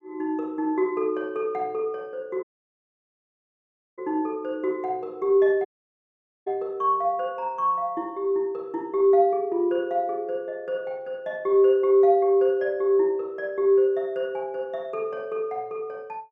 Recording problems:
dropout; at 2.5 s for 1.5 s and at 5.5 s for 1 s

